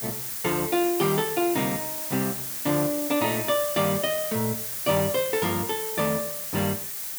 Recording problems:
background hiss; slope +1 dB per octave, SNR 3 dB

